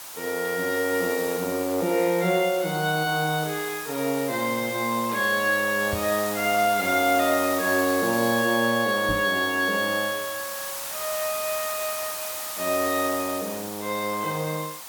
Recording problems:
hiss; SNR 8 dB
knock on the microphone; at 6 s and at 9 s; peak -4 dB vs average level

